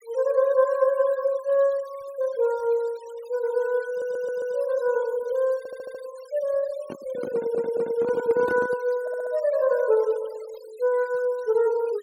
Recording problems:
denoising artefacts; signal-to-artefact ratio 25 dB
stutter; 4 times, first at 4 s
handling noise; from 7 to 9 s; peak -5 dB vs average level

